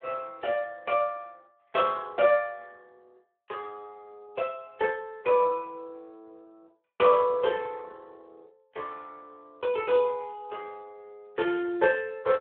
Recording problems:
phone line; 320 Hz to 3.5 kHz, Speex

